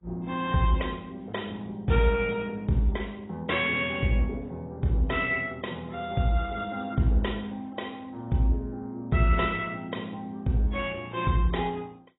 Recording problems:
lossy compression; MP2, then AAC, log-spectral distance 4 dB, nothing above 3.7 kHz

